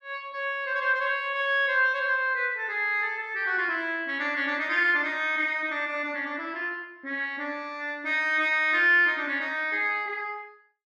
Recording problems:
none

